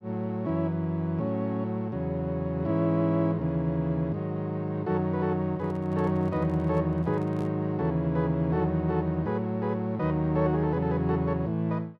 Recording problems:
microphone handling noise; from 5.5 to 7.5 s; peak -12 dB vs average level

